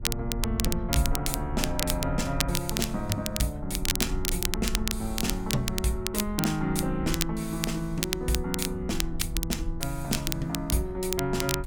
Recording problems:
hum; 60 Hz, harmonics up to 960 Hz, SNR 25 dB
rumble; below 62 Hz, SNR 7 dB
crackle; vinyl, SNR 2 dB

